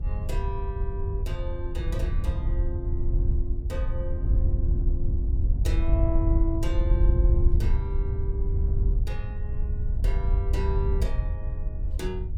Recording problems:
wind on the microphone; below 74 Hz, SNR -10 dB

